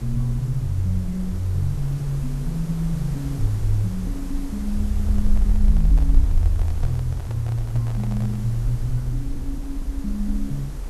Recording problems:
hiss; SNR 15 dB
rumble; below 50 Hz, SNR 2 dB
microphone handling noise; from 5 to 8.5 s; peak -11 dB vs average level

